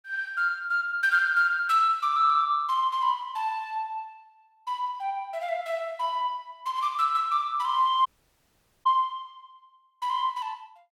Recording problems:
audio cutting out; at 8 s for 1 s

